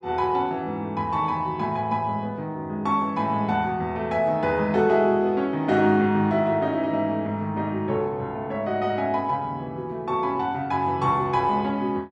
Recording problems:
none

